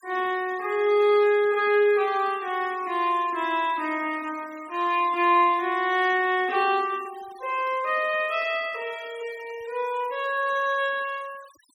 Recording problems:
noise reduction artefacts; signal-to-artefact ratio 23 dB

